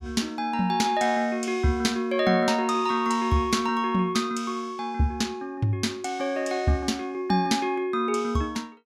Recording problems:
none

